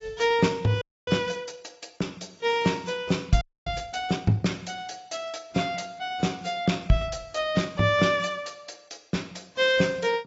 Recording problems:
treble cut off; nothing above 7.6 kHz
lossy compression; AAC, log-spectral distance 4 dB
audio freezing; at 1 s and at 3.5 s

